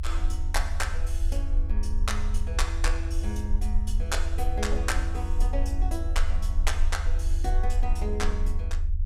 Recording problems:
rumble; below 60 Hz, SNR -5 dB

